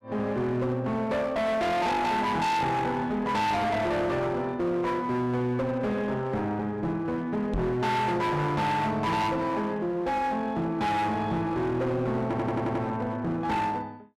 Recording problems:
distorted audio; hard clipping, uneven, signal-to-distortion ratio 6 dB
microphone bump; at 7.5 s; peak +1 dB vs average level
stutter; at 12 s

